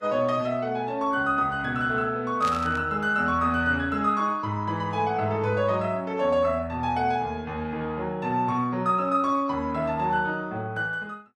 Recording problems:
lossy compression; Vorbis, log-spectral distance 2 dB, nothing above 13.1 kHz
burst of static; at 2.5 s; peak -6 dB vs average level

